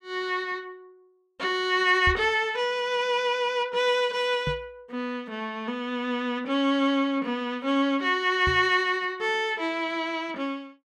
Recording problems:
microphone thump; at 2 s, at 4.5 s and at 8.5 s; peak -1 dB vs average level

